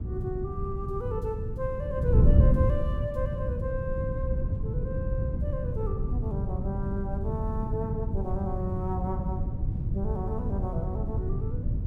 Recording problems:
wind noise; below 130 Hz, SNR -5 dB

